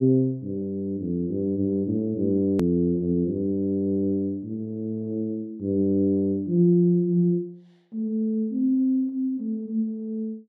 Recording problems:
click at an edit; at 2.5 s

